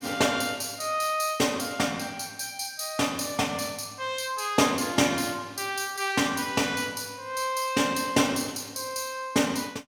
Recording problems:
none

